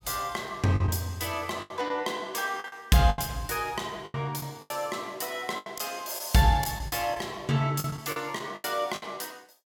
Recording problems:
lost packets; 11% of the sound replaced, filled with the last packet

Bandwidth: 17 kHz